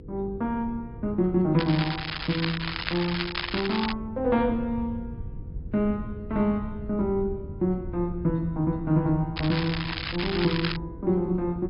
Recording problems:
low-pass filter; nothing above 5.5 kHz
lossy codec; AAC, log-spectral distance 3 dB
hum; 50 Hz, harmonics up to 500 Hz, SNR 22 dB
wind on the microphone; below 120 Hz, SNR 13 dB
crackle; from 1.5 to 4 s and from 9.5 to 11 s; loose cable, SNR 5 dB

